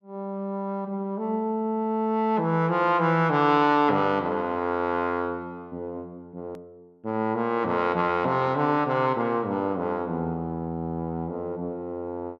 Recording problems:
hard cut with a click; at 6.5 s

